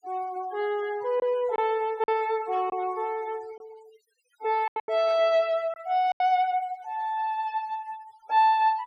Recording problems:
noise reduction artefacts; signal-to-artefact ratio 24 dB
packet loss; 5% of the sound replaced, filled with silence
static burst; at 2.5 s and at 5 s; peak -20 dB vs average level

